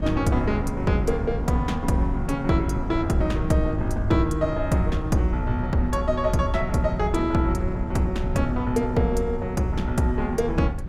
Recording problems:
wind noise; below 110 Hz, SNR 7 dB

